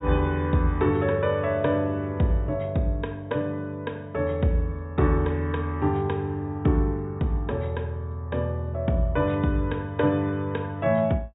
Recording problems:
treble cut off; nothing above 4 kHz

